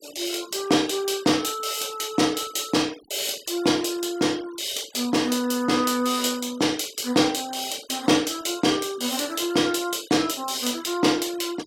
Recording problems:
denoising artefacts; signal-to-artefact ratio 21 dB

